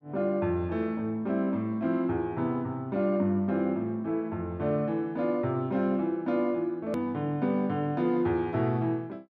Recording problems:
edit click; at 7 s

